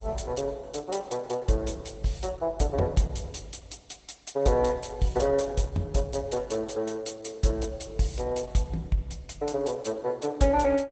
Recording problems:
lossy codec; Opus, log-spectral distance 5 dB, nothing above 8 kHz

